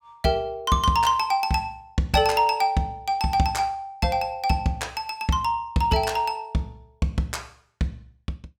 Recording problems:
none

